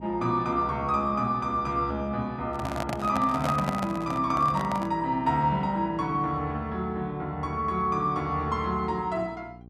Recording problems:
hum; 60 Hz, harmonics up to 780 Hz, SNR 19 dB
microphone handling noise; from 2.5 to 5 s; peak +1 dB vs average level

